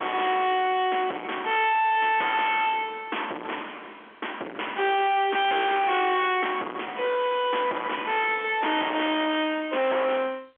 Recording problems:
phone line; 260 Hz to 3.4 kHz, G.711
distortion; hard clipping, uneven, signal-to-distortion ratio 6 dB

